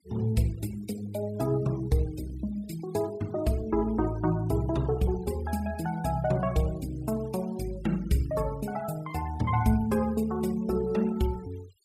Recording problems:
denoising artefacts; signal-to-artefact ratio 21 dB

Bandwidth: 15.5 kHz